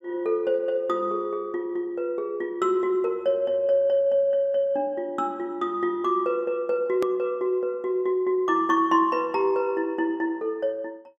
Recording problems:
click at an edit; at 7 s

